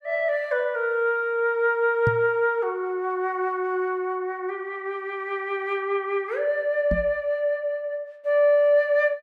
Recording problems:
knock on the microphone; at 2 s and at 7 s; peak +2 dB vs average level

